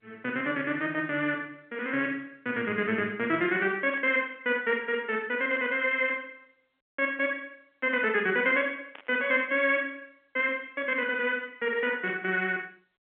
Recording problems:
telephone audio; 240 Hz to 3.4 kHz, G.711
static burst; 4 times, first at 4 s; peak -13 dB vs average level

